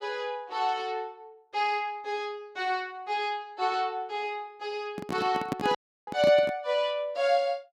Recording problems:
handling noise; from 5 to 6.5 s; peak +2 dB vs average level
audio cutting out; at 6 s

